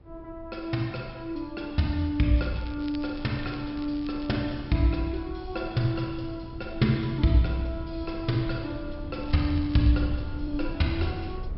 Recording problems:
treble cut off; nothing above 5.4 kHz
low-frequency rumble; below 100 Hz, SNR 14 dB
crackling; from 2.5 to 4.5 s and at 9 s; loose cable, SNR 22 dB

